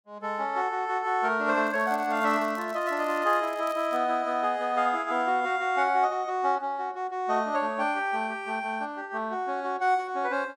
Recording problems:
crackling; from 1.5 to 4 s; loose cable, SNR 24 dB

